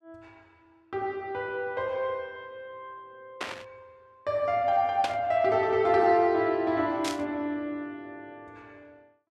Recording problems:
burst of static; at 3.5 s, at 5 s and at 7 s; peak -2 dB vs average level

